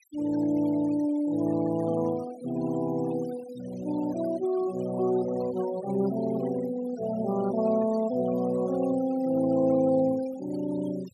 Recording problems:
denoising artefacts; signal-to-artefact ratio 18 dB

